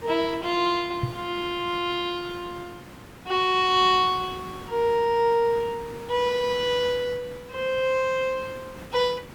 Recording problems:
background hiss; SNR 18 dB
knock on the microphone; at 1 s; peak +1 dB vs average level

